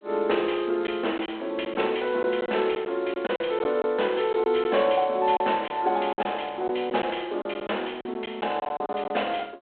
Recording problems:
telephone audio; 280 Hz to 3.4 kHz, G.726
lost packets; 7% of the sound replaced, filled with silence

